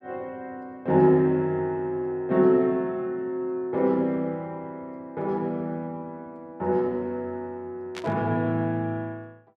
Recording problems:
static burst; at 8 s; peak -7 dB vs average level

